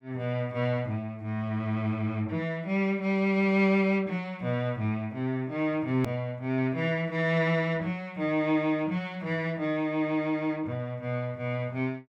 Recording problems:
edit click; at 6 s

